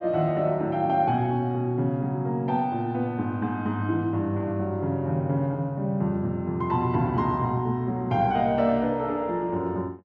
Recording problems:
none

